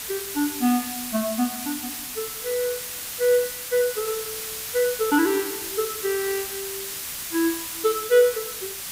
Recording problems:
background hiss; slope +2 dB per octave, SNR 5 dB

